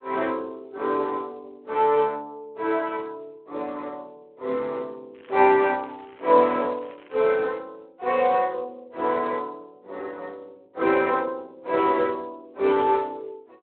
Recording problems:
telephone audio; 300 Hz to 3.6 kHz, Speex
crackling; from 5 to 7 s; loose cable, SNR 28 dB

